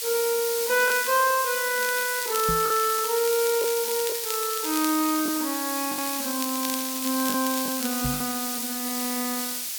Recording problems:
background hiss; slope +4 dB per octave, SNR 2 dB
lost packets; 3% of the sound replaced, filled with the last packet
crackling; at 1 s, from 2 to 5 s and from 6 to 8 s; loose cable, SNR 9 dB
knock on the microphone; at 2.5 s and at 8 s; peak -2 dB vs average level

